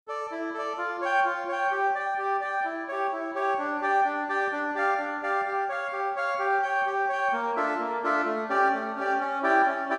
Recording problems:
none

